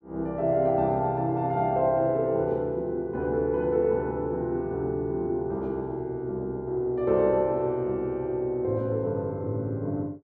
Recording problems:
none

